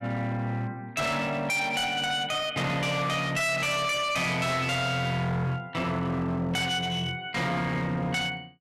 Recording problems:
distortion; hard clipping, uneven, signal-to-distortion ratio 7 dB

